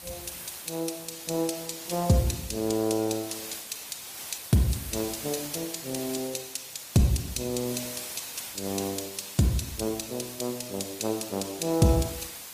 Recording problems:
lossy codec; Opus, log-spectral distance 9 dB, nothing above 15.1 kHz
background hiss; slope 0 dB per octave, SNR 9 dB

